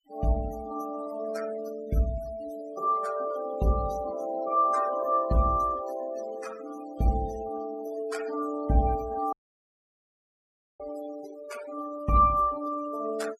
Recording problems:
denoising artefacts; signal-to-artefact ratio 15 dB
audio cutting out; at 9.5 s for 1.5 s

